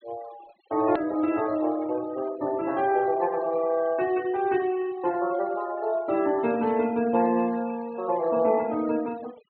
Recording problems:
treble cut off; nothing above 4.3 kHz
denoising artefacts; signal-to-artefact ratio 22 dB
hard cut with a click; at 1 s

